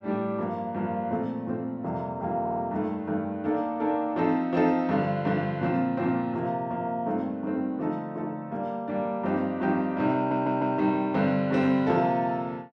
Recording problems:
stutter; at 2.5 s and at 10 s

